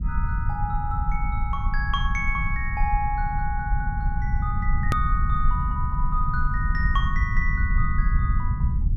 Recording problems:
low-frequency rumble; below 78 Hz, SNR -3 dB
click at an edit; at 5 s

